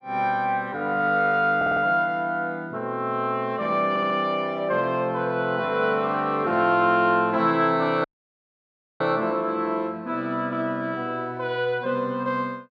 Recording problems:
stutter; at 1.5 s and at 4 s
dropout; at 8 s for 1 s

